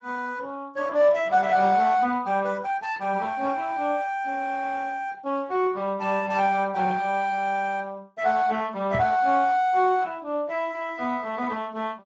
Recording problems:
lossy codec; Speex, log-spectral distance 3 dB
microphone bump; at 9 s; peak -3 dB vs average level

